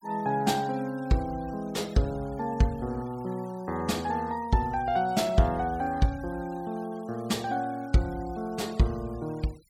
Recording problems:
denoising artefacts; signal-to-artefact ratio 23 dB

